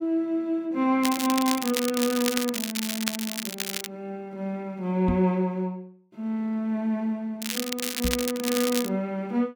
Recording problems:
crackling; from 1 to 4 s and from 7.5 to 9 s; loose cable, SNR 3 dB
knock on the microphone; at 5 s and at 8 s; peak +3 dB vs average level

